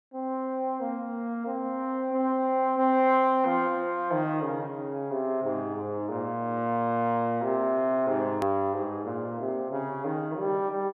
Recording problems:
click at an edit; at 8.5 s

